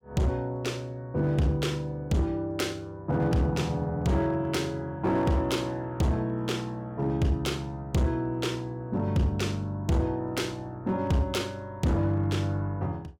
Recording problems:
distortion; hard clipping, signal-to-distortion ratio 11 dB

